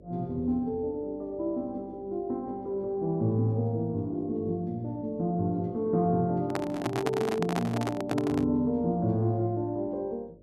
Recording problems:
hum; 50 Hz, harmonics up to 600 Hz, SNR 26 dB
handling noise; from 6.5 to 8.5 s; peak +3 dB vs average level

